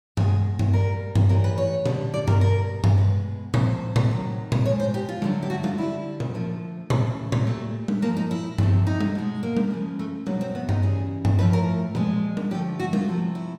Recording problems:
none

